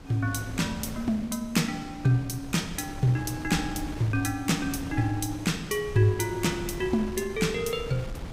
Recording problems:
wind noise; below 380 Hz, SNR 12 dB

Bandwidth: 15.5 kHz